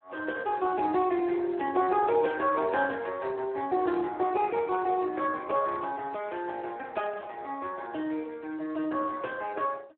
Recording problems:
telephone audio; 280 Hz to 3.1 kHz, Speex

